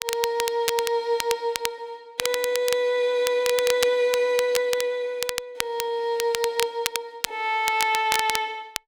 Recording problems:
crackling; vinyl, SNR 6 dB

